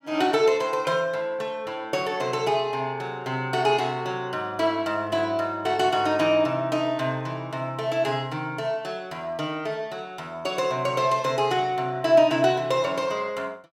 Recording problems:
none

